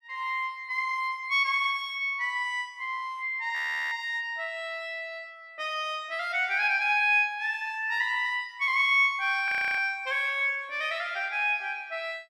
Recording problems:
audio freezing; at 3.5 s and at 9.5 s

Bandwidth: 15 kHz